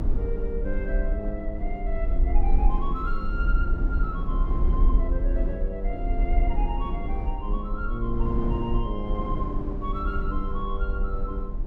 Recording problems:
rumble; below 46 Hz, SNR -4 dB
wind noise; below 310 Hz, SNR 3 dB

